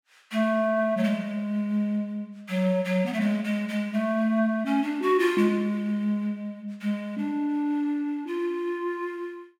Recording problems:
none

